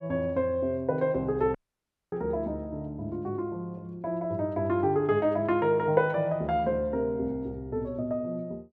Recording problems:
dropout; at 1.5 s for 0.5 s

